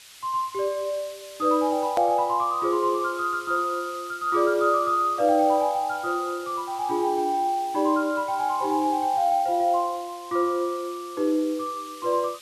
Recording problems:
background hiss; slope +4 dB per octave, SNR 19 dB
edit click; at 2 s

